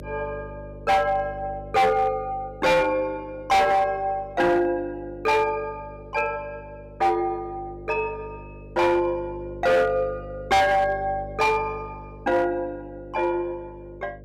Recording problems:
distorted audio; hard clipping, signal-to-distortion ratio 8 dB
hum; 50 Hz, harmonics up to 600 Hz, SNR 18 dB

